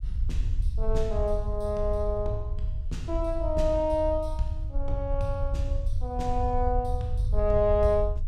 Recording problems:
low-frequency rumble; below 72 Hz, SNR 2 dB

